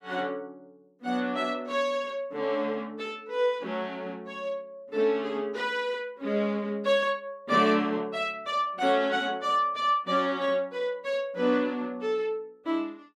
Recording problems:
none

